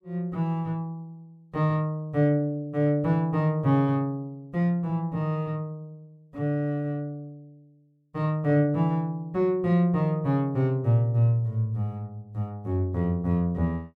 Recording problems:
none

